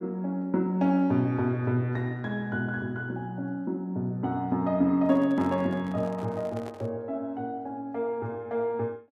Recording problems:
handling noise; from 5 to 7 s; peak -11 dB vs average level

